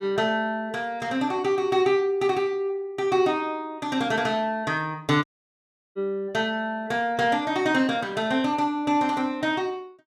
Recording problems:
audio cutting out; at 5 s for 0.5 s

